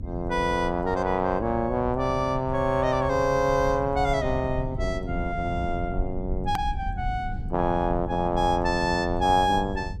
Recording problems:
low-frequency rumble; below 110 Hz, SNR 9 dB
edit click; at 6.5 s

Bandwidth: 15.5 kHz